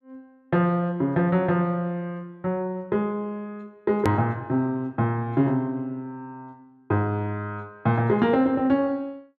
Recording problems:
hard cut with a click; at 4 s

